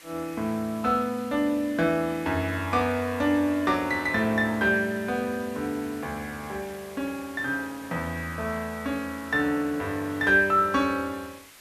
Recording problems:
hiss; SNR 20 dB

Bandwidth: 13.5 kHz